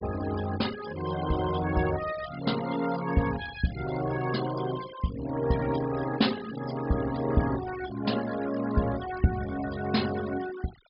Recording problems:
treble cut off; nothing above 5.5 kHz
denoising artefacts; signal-to-artefact ratio 13 dB

